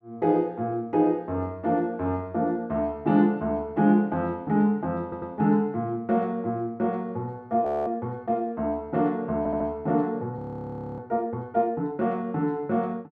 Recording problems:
stutter; at 5 s and at 9.5 s
audio freezing; at 7.5 s and at 10 s for 0.5 s

